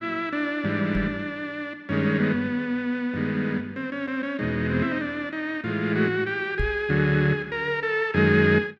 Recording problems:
microphone thump; at 1 s and at 6.5 s; peak 0 dB vs average level

